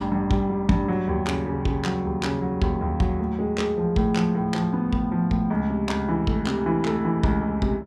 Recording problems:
none

